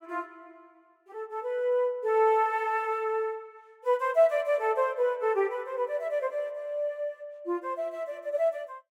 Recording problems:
none

